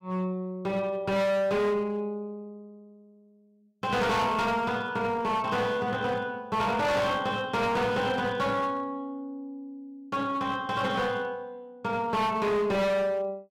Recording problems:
distortion; hard clipping, signal-to-distortion ratio 7 dB

